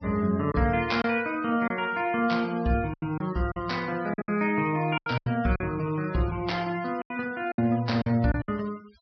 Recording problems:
treble cut off; nothing above 5.5 kHz
noise reduction artefacts; signal-to-artefact ratio 24 dB
packet loss; 9% of the sound replaced, filled with silence

